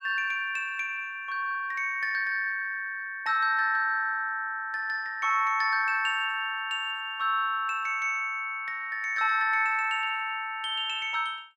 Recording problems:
none

